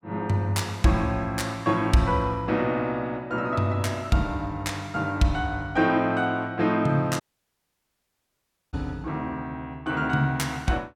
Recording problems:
dropout; at 7 s for 1.5 s

